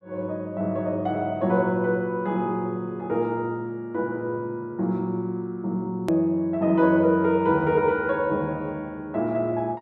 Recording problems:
edit click; at 6 s

